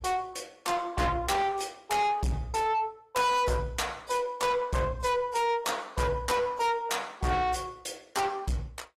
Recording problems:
lossy codec; AAC, log-spectral distance 3 dB
distorted audio; soft clipping, signal-to-distortion ratio 6 dB

